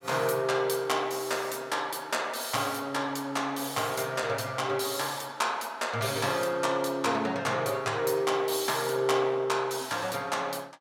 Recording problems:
none

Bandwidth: 16.5 kHz